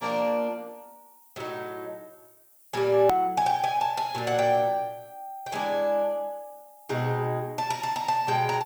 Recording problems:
background hiss; slope +6 dB per octave, SNR 27 dB
edit click; at 3 s

